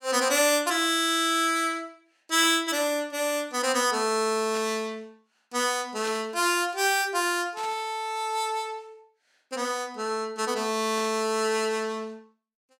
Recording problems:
static burst; 5 times, first at 2.5 s; peak -10 dB vs average level

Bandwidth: 16.5 kHz